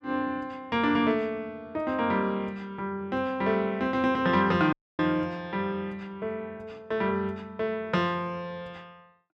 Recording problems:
audio cutting out; at 4.5 s

